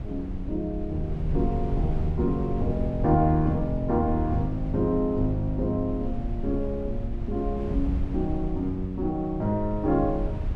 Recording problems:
low-frequency rumble; below 86 Hz, SNR 6 dB

